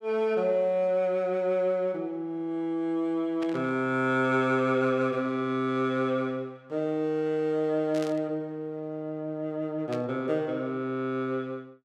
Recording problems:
static burst; at 3.5 s, at 8 s and at 10 s; peak -9 dB vs average level

